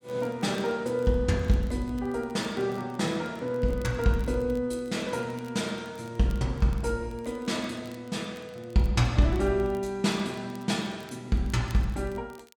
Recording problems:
crackling; vinyl, SNR 27 dB

